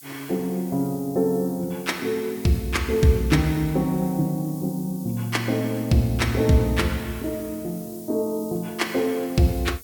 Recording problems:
background hiss; SNR 18 dB

